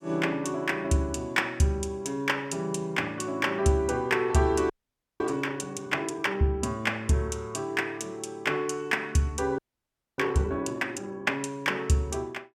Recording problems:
audio freezing; at 4.5 s for 0.5 s and at 9.5 s for 0.5 s

